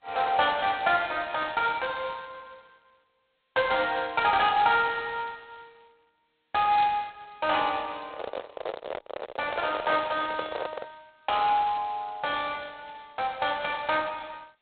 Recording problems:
telephone audio; 320 Hz to 3.8 kHz, G.726
handling noise; from 8 to 11 s; peak -3 dB vs average level

